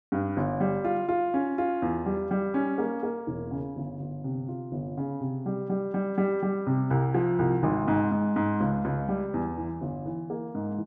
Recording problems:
none

